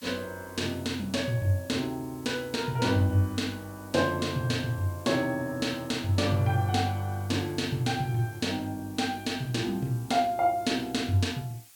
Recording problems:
hiss; slope +3 dB per octave, SNR 23 dB

